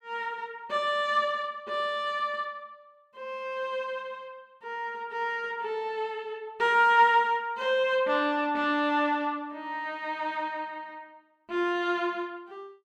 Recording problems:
none

